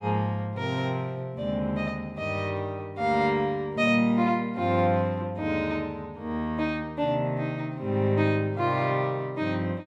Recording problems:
none

